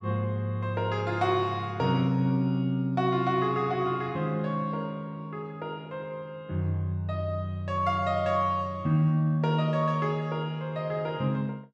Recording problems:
none

